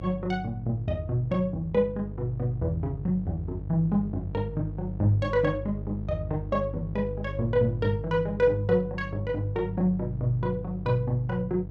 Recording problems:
hum; 50 Hz, harmonics up to 650 Hz, SNR 9 dB

